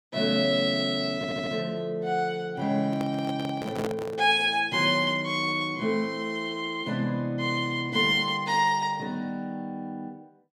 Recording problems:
audio stuttering; at 1 s
microphone handling noise; from 3 to 4 s; peak -3 dB vs average level

